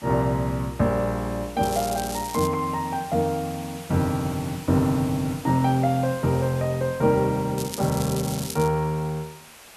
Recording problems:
background hiss; slope -1 dB per octave, SNR 18 dB
crackle; at 1.5 s, at 7.5 s and at 8 s; loose cable, SNR 11 dB

